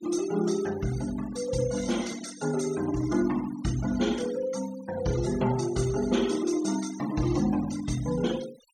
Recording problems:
denoising artefacts; signal-to-artefact ratio 15 dB

